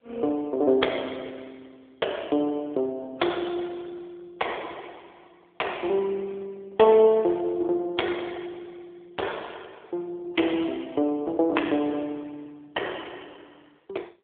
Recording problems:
phone line; 260 Hz to 3.5 kHz, AMR-NB

